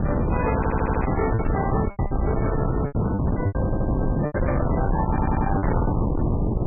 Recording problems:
codec artefacts; MP3, log-spectral distance 3 dB, nothing above 2.4 kHz
distortion; soft clipping, signal-to-distortion ratio 7 dB
wind on the microphone; below 350 Hz, SNR -3 dB
packet loss; 9% of the sound replaced, filled with repeated pitch periods
audio stuttering; at 0.5 s, at 3.5 s and at 5 s

